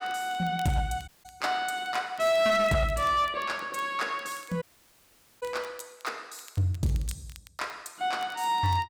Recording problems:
distorted audio; hard clipping, uneven, signal-to-distortion ratio 12 dB
crackle; vinyl, SNR 24 dB
dropout; at 1 s and at 4.5 s for 1 s

